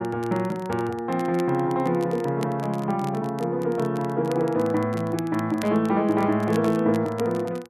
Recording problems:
crackling; vinyl, SNR 22 dB

